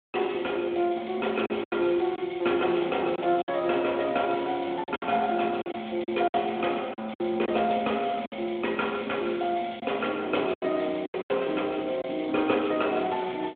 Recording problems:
phone line; 240 Hz to 3.4 kHz, Speex
lost packets; 7% of the sound replaced, filled with silence

